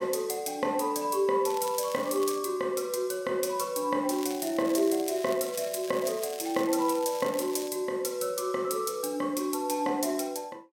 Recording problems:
crackling; at 1.5 s and from 4 to 7.5 s; loose cable, SNR 15 dB

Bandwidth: 16.5 kHz